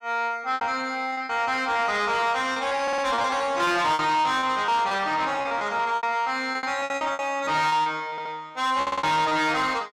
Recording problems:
distortion; soft clipping, signal-to-distortion ratio 10 dB
lost packets; 14% of the sound replaced, filled with repeated pitch periods
stutter; at 3 s, at 8 s and at 9 s

